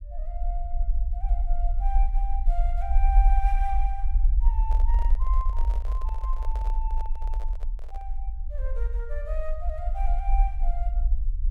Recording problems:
rumble; below 46 Hz, SNR -10 dB
microphone handling noise; from 4.5 to 8 s; peak -4 dB vs average level

